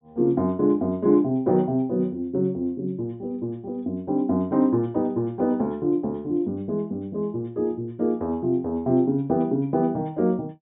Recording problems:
treble cut off; nothing above 4 kHz

